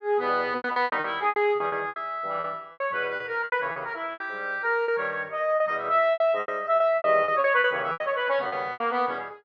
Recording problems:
lost packets; 16% of the sound replaced, filled with repeated pitch periods

